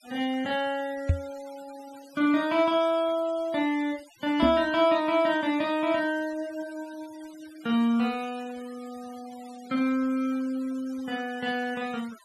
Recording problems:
denoising artefacts; signal-to-artefact ratio 22 dB
microphone bump; at 1 s and at 4.5 s; peak +7 dB vs average level

